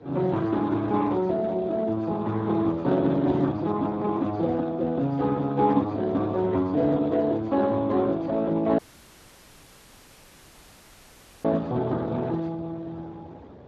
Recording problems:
codec artefacts; Speex, log-spectral distance 3 dB
wind on the microphone; below 640 Hz, SNR 21 dB
dropout; at 9 s for 2.5 s

